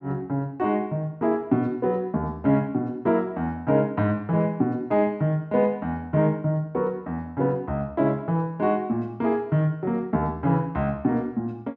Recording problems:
none

